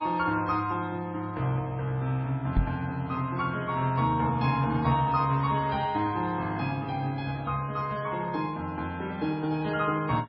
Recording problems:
lossy compression; MP3, log-spectral distance 2 dB, nothing above 5.2 kHz
knock on the microphone; at 2.5 s; peak +6 dB vs average level

